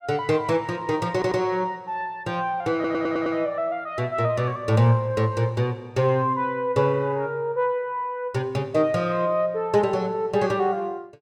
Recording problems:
stutter; at 1 s and at 2.5 s

